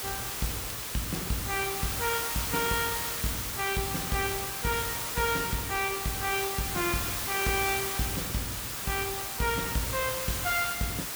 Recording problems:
distorted audio; soft clipping, signal-to-distortion ratio 11 dB
background hiss; slope 0 dB per octave, SNR 0 dB
crackling; vinyl, SNR 21 dB

